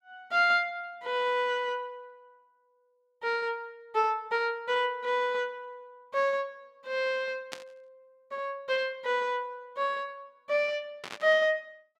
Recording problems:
static burst; at 7.5 s and at 11 s; peak -4 dB vs average level

